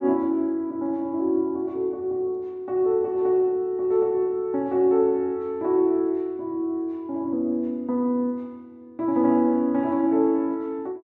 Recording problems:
none

